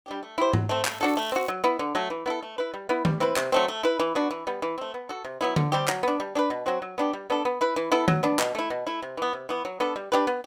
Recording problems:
crackling; at 1 s; loose cable, SNR 19 dB

